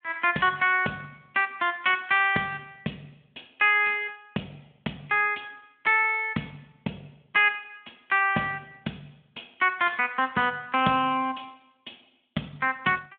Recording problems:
phone line; 170 Hz to 3.8 kHz, Speex

